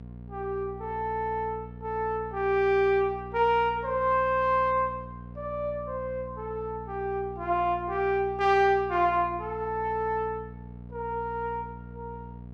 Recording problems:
electrical hum; 60 Hz, harmonics up to 720 Hz, SNR 15 dB

